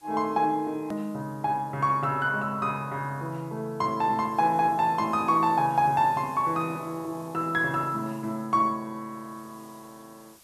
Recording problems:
background hiss; slope -1 dB per octave, SNR 28 dB
click at an edit; at 1 s

